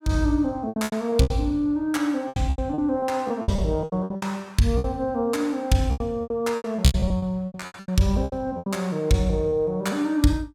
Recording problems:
packet loss; 16% of the sound replaced, filled with repeated pitch periods

